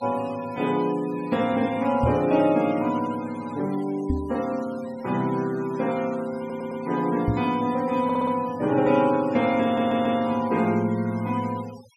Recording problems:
denoising artefacts; signal-to-artefact ratio 19 dB
microphone bump; at 2 s, at 4 s and at 7.5 s; peak +3 dB vs average level
audio stuttering; at 6.5 s, at 8 s and at 9.5 s

